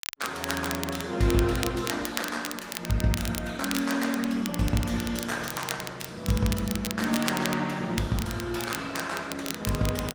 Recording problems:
lossy compression; Opus, log-spectral distance 4 dB
crackling; vinyl, SNR 8 dB

